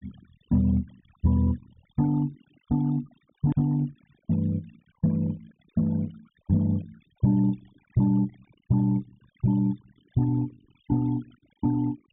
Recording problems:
low-pass filter; nothing above 3.6 kHz
denoising artefacts; signal-to-artefact ratio 25 dB
hard cut with a click; at 3.5 s

